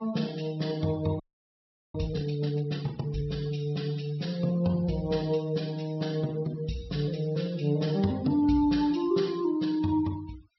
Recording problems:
low-pass filter; nothing above 5.7 kHz
noise reduction artefacts; signal-to-artefact ratio 21 dB
audio freezing; at 1 s for 0.5 s

